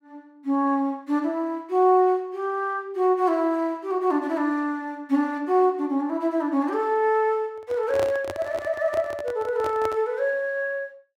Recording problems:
microphone handling noise; from 7.5 to 10 s; peak -4 dB vs average level

